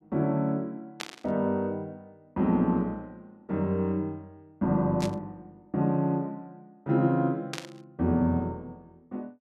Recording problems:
burst of static; at 1 s, at 5 s and at 7.5 s; peak -2 dB vs average level

